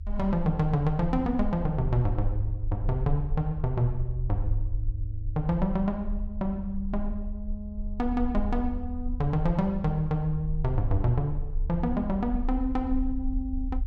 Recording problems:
low-frequency rumble; below 54 Hz, strongest tone 30 Hz, SNR 6 dB

